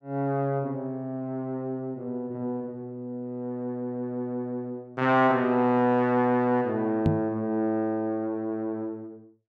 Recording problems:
knock on the microphone; at 7 s; peak +6 dB vs average level

